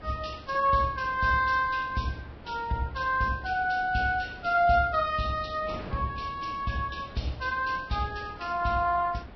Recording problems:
lossy codec; Vorbis, log-spectral distance 5 dB, nothing above 5.7 kHz
wind on the microphone; below 790 Hz, SNR 18 dB

